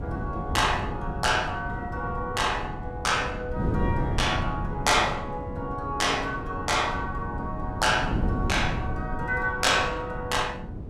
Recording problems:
wind on the microphone; below 230 Hz, SNR 6 dB

